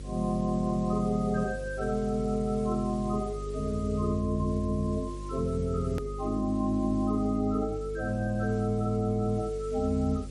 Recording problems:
codec artefacts; MP3, log-spectral distance 3 dB, nothing above 13.1 kHz
hum; 50 Hz, harmonics up to 550 Hz, SNR 10 dB
hiss; slope +3 dB per octave, SNR 24 dB
click at an edit; at 6 s

